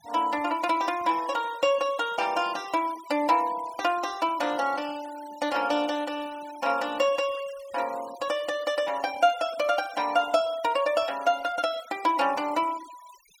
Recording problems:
denoising artefacts; signal-to-artefact ratio 19 dB

